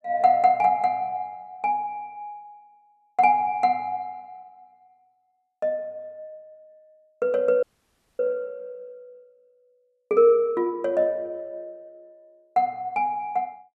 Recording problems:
audio cutting out; at 7.5 s for 0.5 s

